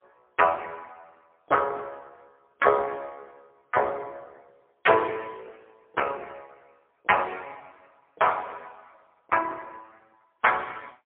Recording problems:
telephone audio; 320 Hz to 3.3 kHz, AMR-NB, then MP3

